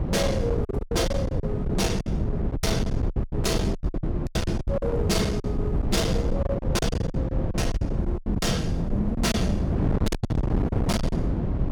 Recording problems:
distorted audio; hard clipping, uneven, signal-to-distortion ratio 8 dB
wind noise; below 230 Hz, SNR -1 dB
lost packets; 16% of the sound replaced, filled with silence

